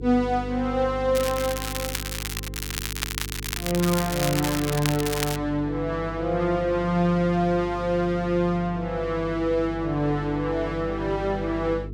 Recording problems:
electrical hum; 50 Hz, harmonics up to 450 Hz, SNR 11 dB
crackling; from 1 to 5.5 s; loose cable, SNR 6 dB

